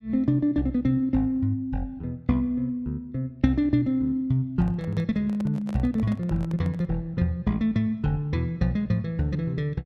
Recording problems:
handling noise; from 4.5 to 7 s; peak -11 dB vs average level

